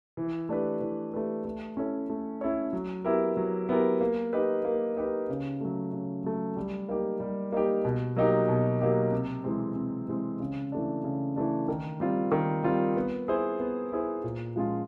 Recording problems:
none

